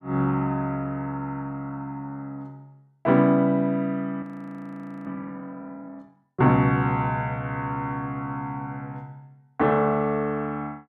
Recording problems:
audio freezing; at 4 s for 1 s

